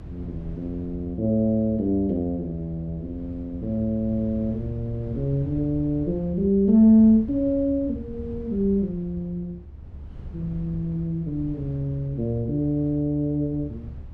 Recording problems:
rumble; below 120 Hz, SNR 15 dB

